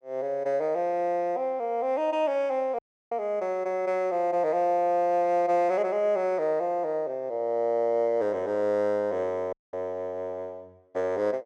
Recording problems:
dropout; at 3 s and at 9.5 s

